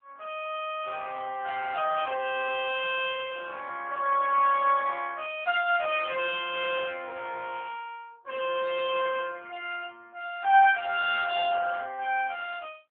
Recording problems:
phone line; 390 Hz to 3.5 kHz, AMR-NB

